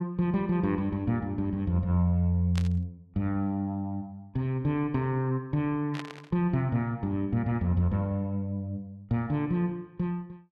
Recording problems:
burst of static; at 2.5 s and at 6 s; peak -5 dB vs average level

